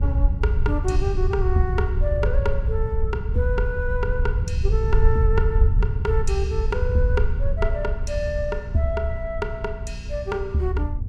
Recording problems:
hum; 60 Hz, harmonics up to 480 Hz, SNR 14 dB
low-frequency rumble; below 76 Hz, SNR -2 dB

